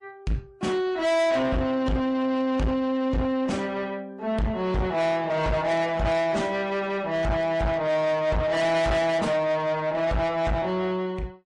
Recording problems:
lossy codec; AAC, then MP3, log-spectral distance 2 dB, nothing above 11 kHz
distortion; soft clipping, signal-to-distortion ratio 7 dB

